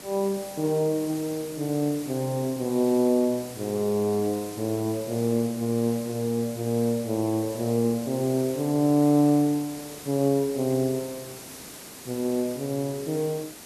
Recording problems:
background hiss; SNR 15 dB

